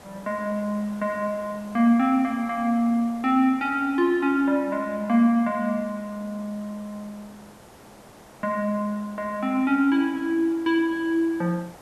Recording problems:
hiss; SNR 23 dB

